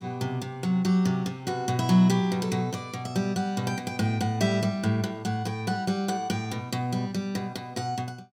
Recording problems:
none

